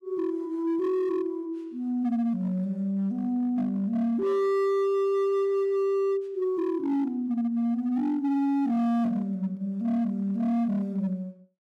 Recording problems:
distortion; hard clipping, signal-to-distortion ratio 10 dB

